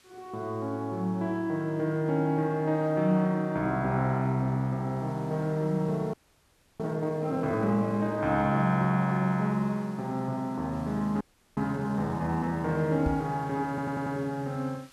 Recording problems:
background hiss; SNR 28 dB
frozen audio; at 6 s for 0.5 s and at 11 s
microphone bump; at 13 s; peak +1 dB vs average level
stutter; at 14 s

